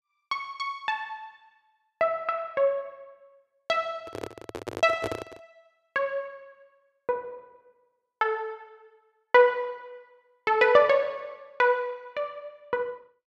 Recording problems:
handling noise; from 4 to 5.5 s; peak -2 dB vs average level

